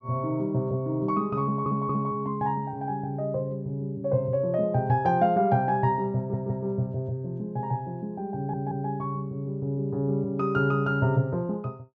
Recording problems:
audio stuttering; at 1.5 s, at 6 s and at 8.5 s

